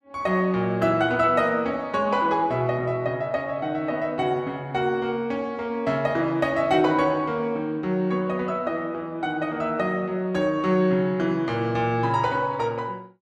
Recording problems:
none

